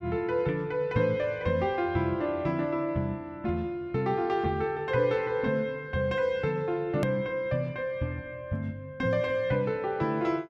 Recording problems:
edit click; at 7 s

